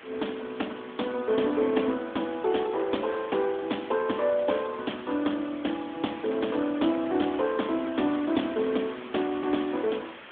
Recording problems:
telephone audio; 220 Hz to 3.6 kHz, AMR-NB
background hiss; SNR 16 dB

